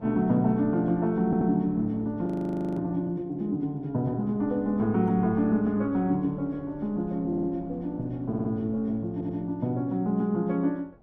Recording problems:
wind noise; below 450 Hz, SNR 22 dB
audio stuttering; 4 times, first at 1.5 s
frozen audio; at 2.5 s for 0.5 s

